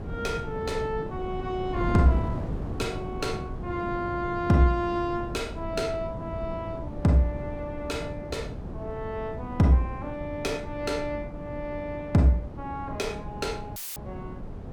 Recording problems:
wind noise; below 270 Hz, SNR 8 dB
audio cutting out; at 14 s; filled with static

